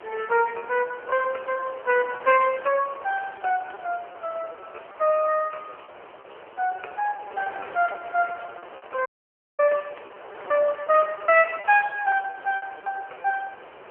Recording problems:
telephone audio; 370 Hz to 3.1 kHz, AMR-NB
background hiss; SNR 20 dB
wind on the microphone; below 1.7 kHz, SNR 20 dB
packet loss; 16% of the sound replaced, filled with repeated pitch periods
audio cutting out; at 9 s for 0.5 s

